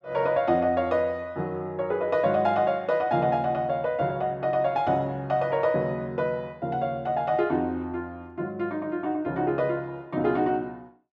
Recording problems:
none

